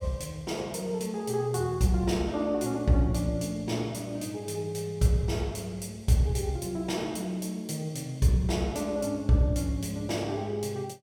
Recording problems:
none

